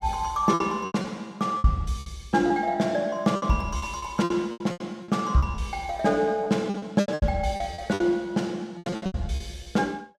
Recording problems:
lost packets; 15% of the sound replaced, filled with repeated pitch periods

